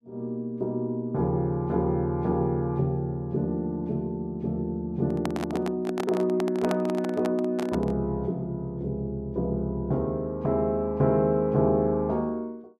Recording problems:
microphone handling noise; from 5 to 8 s; peak +1 dB vs average level

